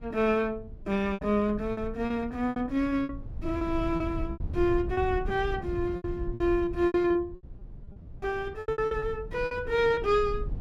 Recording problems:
low-frequency rumble; below 100 Hz, SNR 11 dB
lost packets; 14% of the sound replaced, filled with repeated pitch periods

